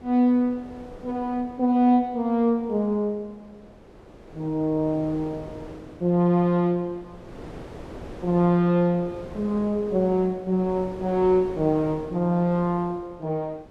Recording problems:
wind on the microphone; below 590 Hz, SNR 19 dB

